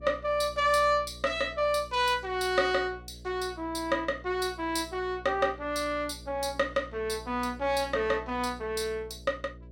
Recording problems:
electrical hum; 60 Hz, harmonics up to 660 Hz, SNR 19 dB

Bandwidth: 16.5 kHz